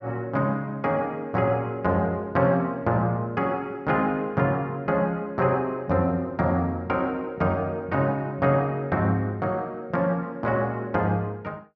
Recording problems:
none

